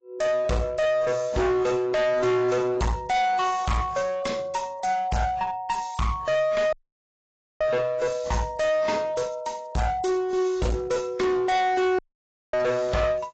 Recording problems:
codec artefacts; AAC, log-spectral distance 3 dB, nothing above 7.6 kHz
distortion; hard clipping, uneven, signal-to-distortion ratio 5 dB
audio cutting out; at 6.5 s for 1 s and at 12 s for 0.5 s

